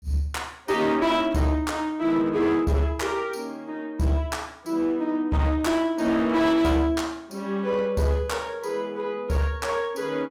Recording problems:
distorted audio; hard clipping, uneven, signal-to-distortion ratio 10 dB

